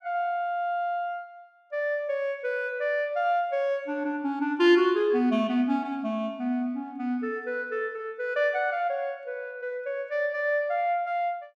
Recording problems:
none

